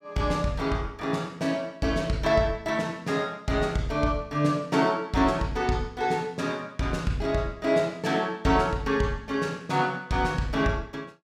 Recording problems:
none

